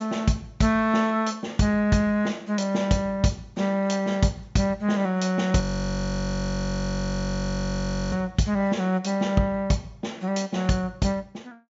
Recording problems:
low-pass filter; nothing above 8 kHz
frozen audio; at 5.5 s for 2.5 s

